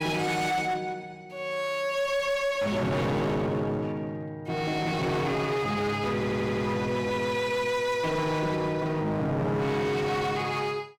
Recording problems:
distortion; hard clipping, uneven, signal-to-distortion ratio 7 dB
audio stuttering; at 6 s

